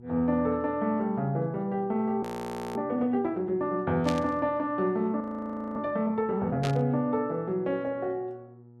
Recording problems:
mains hum; 60 Hz, harmonics up to 840 Hz, SNR 23 dB
audio freezing; at 2 s for 0.5 s and at 5 s for 0.5 s
burst of static; at 4 s and at 6.5 s; peak -2 dB vs average level

